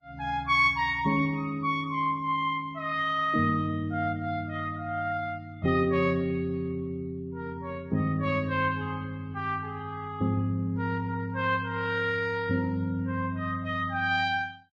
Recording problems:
lossy compression; Vorbis, log-spectral distance 2 dB, nothing above 9 kHz

